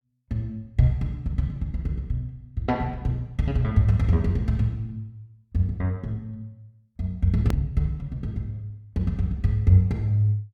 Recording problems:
hard cut with a click; at 7.5 s

